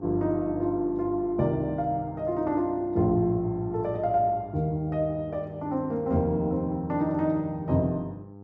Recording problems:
hum; 50 Hz, harmonics up to 1 kHz, SNR 17 dB

